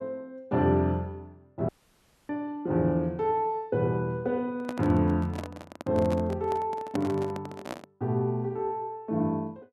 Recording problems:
audio cutting out; at 1.5 s for 0.5 s
handling noise; from 4.5 to 8 s; peak -1 dB vs average level

